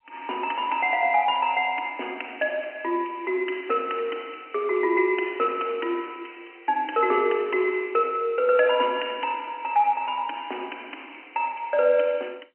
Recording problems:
phone line; 240 Hz to 3.1 kHz, G.711

